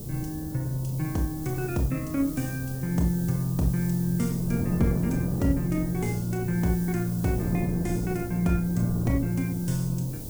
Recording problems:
background hiss; SNR 14 dB
wind on the microphone; below 300 Hz, SNR 9 dB

